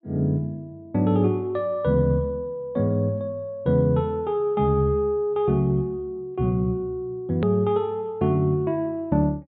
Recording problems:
treble cut off; nothing above 4.3 kHz
edit click; at 7.5 s

